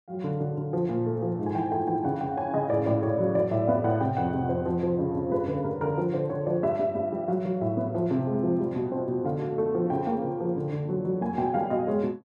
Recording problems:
none

